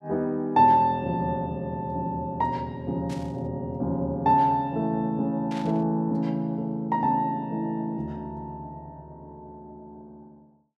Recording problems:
static burst; at 3 s and at 5.5 s; peak -11 dB vs average level

